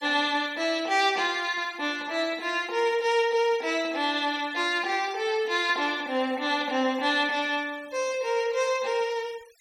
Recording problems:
denoising artefacts; signal-to-artefact ratio 23 dB

